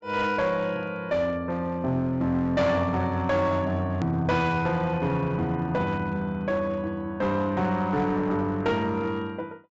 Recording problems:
treble missing; nothing above 8 kHz
distortion; hard clipping, uneven, signal-to-distortion ratio 11 dB
hard cut with a click; at 4 s

